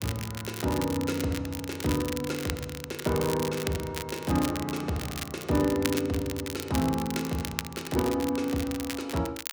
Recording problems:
crackle; vinyl, SNR 8 dB

